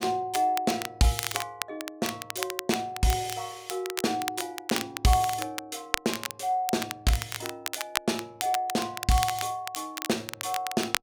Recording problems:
crackling; vinyl, SNR 6 dB

